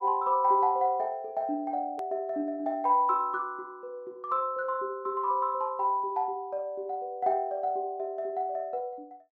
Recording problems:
hard cut with a click; at 2 s

